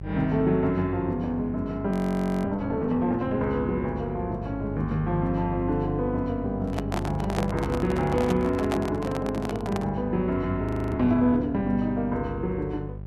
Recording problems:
mains hum; 50 Hz, harmonics up to 600 Hz, SNR 10 dB
audio freezing; at 2 s for 0.5 s and at 11 s
handling noise; from 6.5 to 10 s; peak +1 dB vs average level

